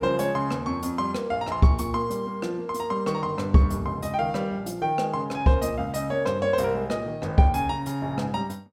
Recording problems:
none

